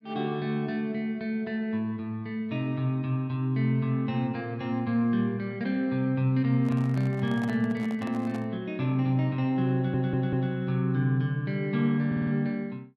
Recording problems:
microphone handling noise; from 6.5 to 8.5 s; peak -9 dB vs average level
stutter; at 10 s and at 12 s

